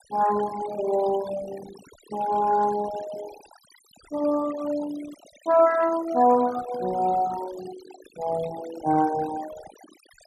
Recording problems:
noise reduction artefacts; signal-to-artefact ratio 15 dB

